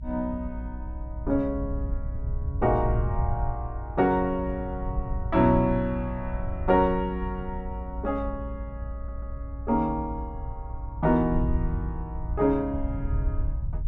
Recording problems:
rumble; below 80 Hz, SNR 6 dB
stutter; at 9 s

